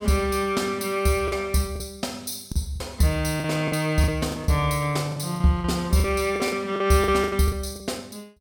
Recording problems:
lost packets; 10% of the sound replaced, filled with the last packet

